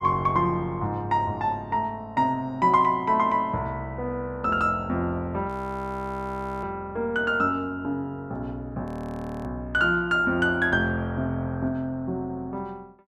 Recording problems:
audio freezing; at 5.5 s for 1 s and at 9 s for 0.5 s

